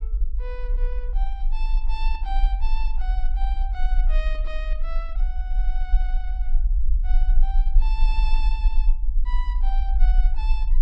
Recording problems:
rumble; below 40 Hz, strongest tone 20 Hz, SNR -13 dB

